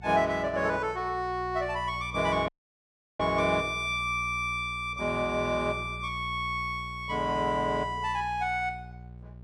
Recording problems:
hum; 60 Hz, harmonics up to 600 Hz, SNR 15 dB
audio cutting out; at 2.5 s for 0.5 s

